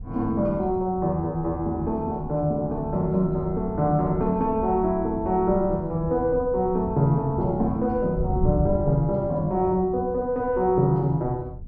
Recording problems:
wind noise; below 110 Hz, SNR 12 dB

